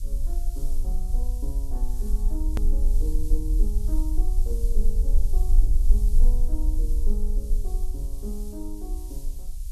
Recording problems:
background hiss; SNR 8 dB
rumble; below 42 Hz, strongest tone 24 Hz, SNR -13 dB
edit click; at 2.5 s

